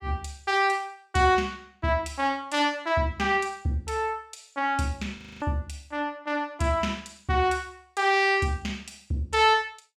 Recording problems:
frozen audio; at 5 s

